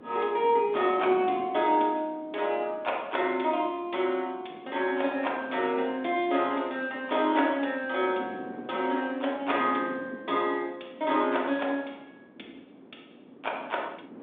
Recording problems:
telephone audio; 220 Hz to 3.7 kHz, G.726
wind on the microphone; below 450 Hz, SNR 18 dB

